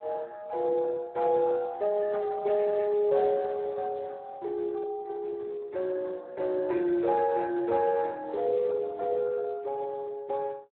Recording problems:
phone line; 300 Hz to 2.3 kHz, Speex

